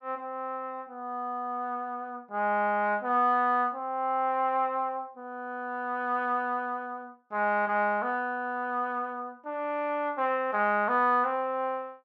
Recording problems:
none

